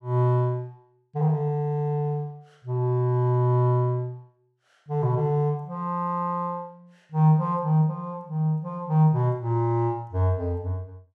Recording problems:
none

